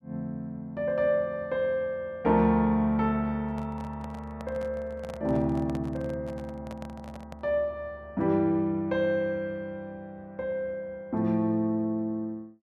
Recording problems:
handling noise; from 3.5 to 7.5 s; peak -8 dB vs average level

